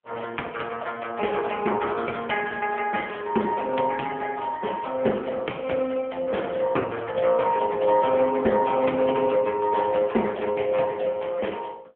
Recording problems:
phone line; 280 Hz to 3.3 kHz, AMR-NB

